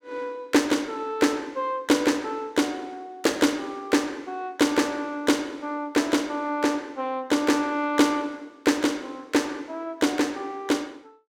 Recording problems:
none

